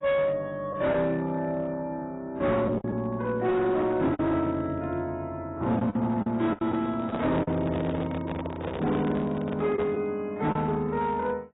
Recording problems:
lossy compression; AAC, log-spectral distance 2 dB, nothing above 3.8 kHz
distorted audio; hard clipping, signal-to-distortion ratio 12 dB
packet loss; 4% of the sound replaced, filled with the last packet
handling noise; from 6.5 to 10 s; peak -3 dB vs average level

